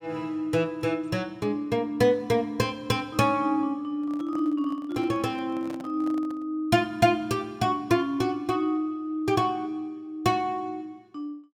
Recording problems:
microphone handling noise; from 4 to 6.5 s; peak -10 dB vs average level

